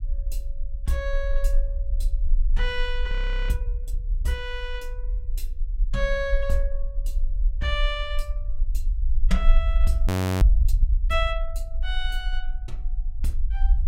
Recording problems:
rumble; below 46 Hz, SNR -3 dB
audio freezing; at 3 s and at 10 s

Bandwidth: 16.5 kHz